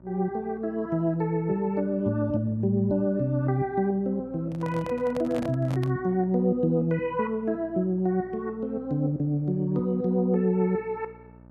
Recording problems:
electrical hum; 60 Hz, harmonics up to 1.3 kHz, SNR 24 dB
microphone handling noise; from 4.5 to 6 s; peak -5 dB vs average level

